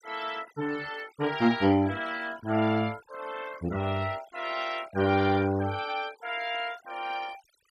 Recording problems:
denoising artefacts; signal-to-artefact ratio 18 dB

